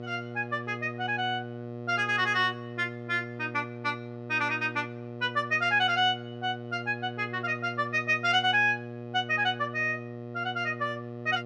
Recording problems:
electrical hum; 60 Hz, harmonics up to 1.3 kHz, SNR 11 dB

